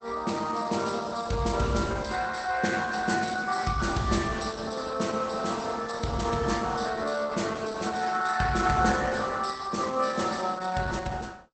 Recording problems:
lossy codec; Opus, log-spectral distance 6 dB, nothing above 8.2 kHz

